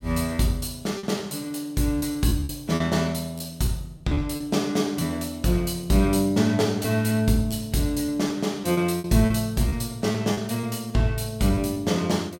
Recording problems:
packet loss; 7% of the sound replaced, filled with repeated pitch periods

